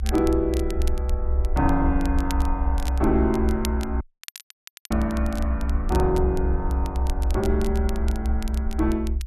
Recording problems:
low-frequency rumble; below 66 Hz, strongest tone 62 Hz, SNR 0 dB
crackle; vinyl, SNR 16 dB
audio cutting out; at 4 s for 1 s

